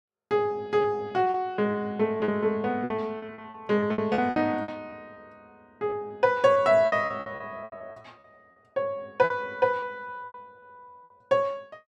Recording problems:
lost packets; 14% of the sound replaced, filled with repeated pitch periods

